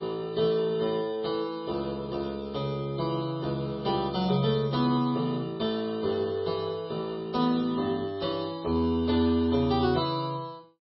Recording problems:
codec artefacts; MP3, log-spectral distance 3 dB, nothing above 4.8 kHz

